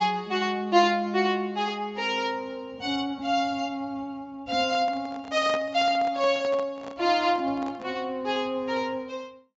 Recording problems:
treble missing; nothing above 8 kHz
handling noise; from 4.5 to 8 s; peak -5 dB vs average level

